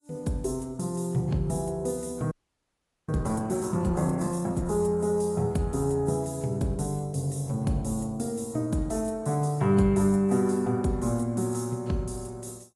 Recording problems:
lossy compression; AAC, log-spectral distance 3 dB, nothing above 11.6 kHz
audio freezing; at 2.5 s for 1 s

